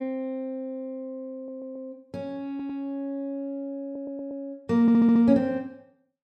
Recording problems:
audio stuttering; 4 times, first at 1.5 s

